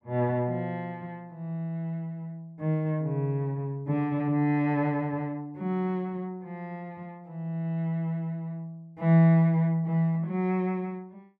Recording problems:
none

